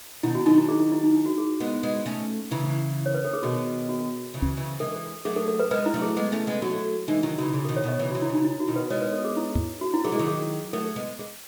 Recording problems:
background hiss; slope 0 dB per octave, SNR 15 dB
microphone bump; at 4.5 s and at 9.5 s; peak +5 dB vs average level

